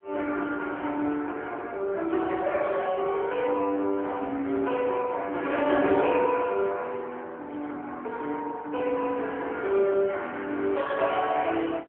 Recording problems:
telephone audio; 260 Hz to 3.3 kHz, AMR-NB

